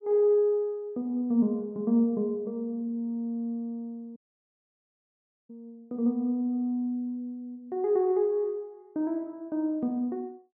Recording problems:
audio cutting out; at 4 s for 1.5 s

